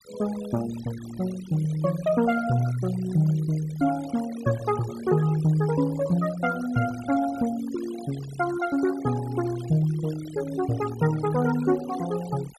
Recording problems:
denoising artefacts; signal-to-artefact ratio 17 dB

